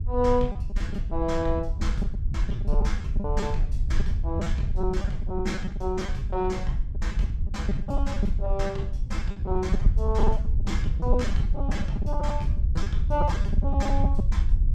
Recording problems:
wind noise; below 70 Hz, SNR -3 dB
packet loss; 14% of the sound replaced, filled with repeated pitch periods

